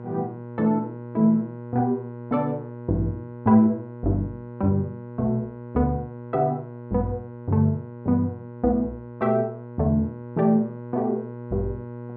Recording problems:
hum; 60 Hz, harmonics up to 1.4 kHz, SNR 13 dB

